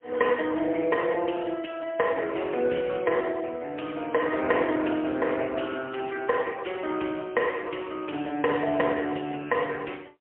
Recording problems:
phone line; 260 Hz to 3.1 kHz, AMR-NB, then MP3

